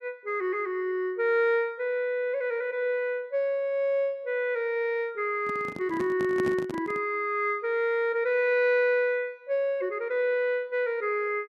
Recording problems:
handling noise; from 5.5 to 7 s; peak -3 dB vs average level

